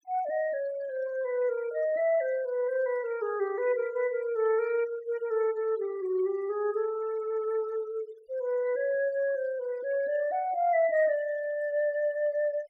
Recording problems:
noise reduction artefacts; signal-to-artefact ratio 23 dB

